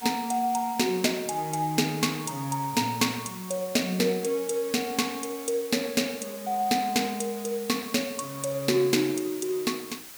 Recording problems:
background hiss; slope 0 dB per octave, SNR 14 dB

